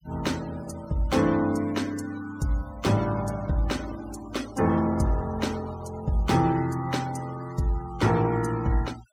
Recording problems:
denoising artefacts; signal-to-artefact ratio 18 dB

